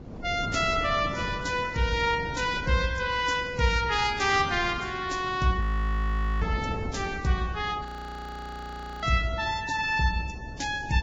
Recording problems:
lossy codec; Vorbis, log-spectral distance 4 dB
wind on the microphone; below 330 Hz, SNR 13 dB
audio freezing; at 5.5 s for 1 s and at 8 s for 1 s

